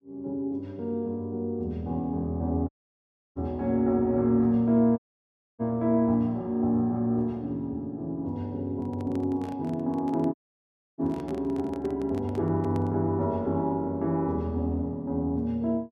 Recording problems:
dropout; at 2.5 s for 0.5 s, at 5 s for 0.5 s and at 10 s for 0.5 s
handling noise; from 8.5 to 13 s; peak -10 dB vs average level

